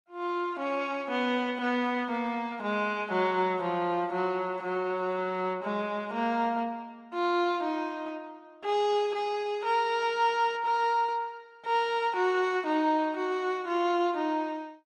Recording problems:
lossy codec; Opus, log-spectral distance 2 dB, nothing above 11.6 kHz

